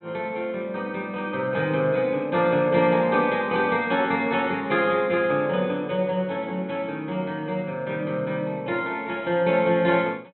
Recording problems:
treble missing; nothing above 4 kHz

